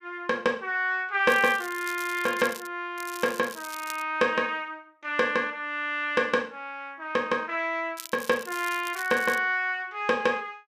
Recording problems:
crackling; from 1.5 to 2.5 s, from 3 to 4 s and from 8 to 9.5 s; loose cable, SNR 15 dB

